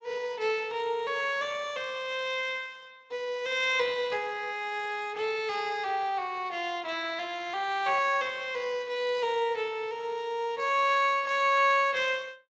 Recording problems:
codec artefacts; Speex, log-spectral distance 3 dB, nothing above 7.3 kHz

